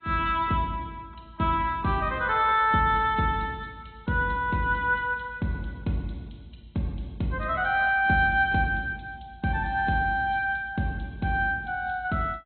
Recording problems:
treble cut off; nothing above 3.9 kHz
lossy compression; AAC, log-spectral distance 3 dB

